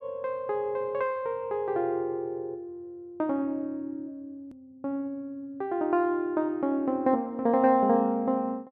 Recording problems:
edit click; at 4.5 s

